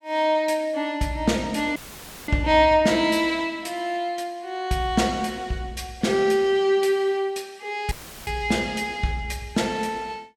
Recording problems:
dropout; at 2 s for 0.5 s and at 8 s; filled with static

